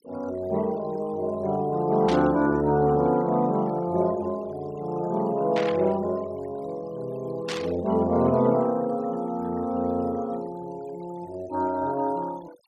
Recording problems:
noise reduction artefacts; signal-to-artefact ratio 22 dB
burst of static; at 2 s, at 5.5 s and at 7.5 s; peak -3 dB vs average level

